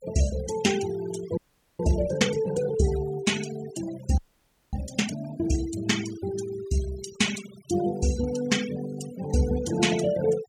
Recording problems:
noise reduction artefacts; signal-to-artefact ratio 11 dB
audio freezing; at 1.5 s and at 4 s for 0.5 s

